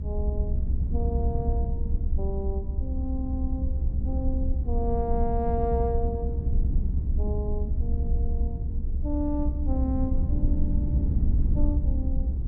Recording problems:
rumble; below 70 Hz, SNR -6 dB

